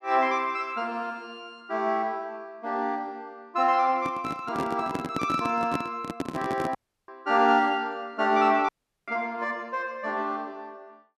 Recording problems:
microphone handling noise; from 4 to 7 s; peak +2 dB vs average level
dropout; at 7 s and at 8.5 s

